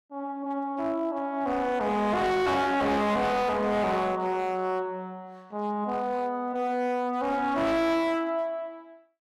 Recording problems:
distorted audio; hard clipping, uneven, signal-to-distortion ratio 8 dB

